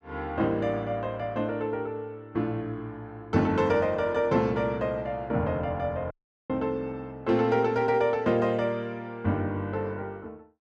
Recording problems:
dropout; at 6 s

